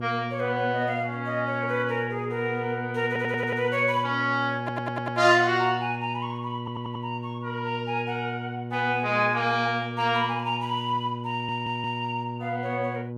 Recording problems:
electrical hum; 60 Hz, harmonics up to 960 Hz, SNR 8 dB
stutter; 4 times, first at 3 s

